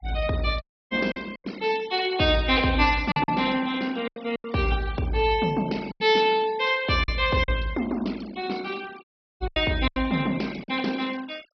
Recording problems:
low-pass filter; nothing above 5.5 kHz
denoising artefacts; signal-to-artefact ratio 20 dB
packet loss; 7% of the sound replaced, filled with silence
dropout; at 0.5 s and at 9 s

